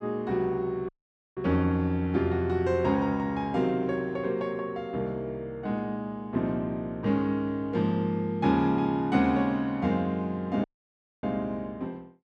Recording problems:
dropout; at 1 s and at 11 s for 0.5 s

